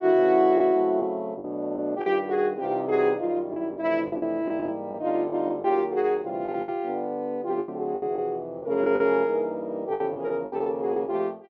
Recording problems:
treble missing; nothing above 7.1 kHz
lost packets; 8% of the sound replaced, filled with the last packet

